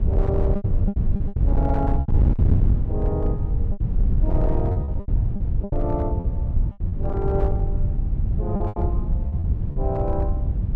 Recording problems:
distortion; hard clipping, signal-to-distortion ratio 12 dB
wind on the microphone; below 100 Hz, SNR -6 dB
packet loss; 10% of the sound replaced, filled with repeated pitch periods

